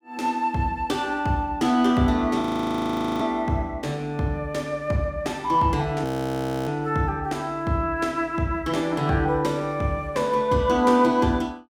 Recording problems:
audio freezing; at 2.5 s for 1 s and at 6 s for 0.5 s

